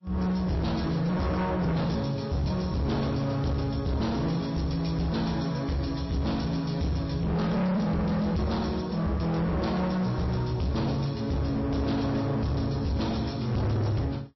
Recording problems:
lossy compression; MP3, log-spectral distance 3 dB, nothing above 5.7 kHz
distorted audio; hard clipping, uneven, signal-to-distortion ratio 7 dB

